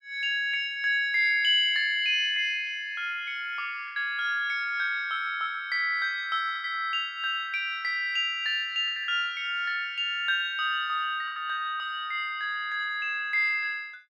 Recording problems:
lost packets; 3% of the sound replaced, filled with the last packet

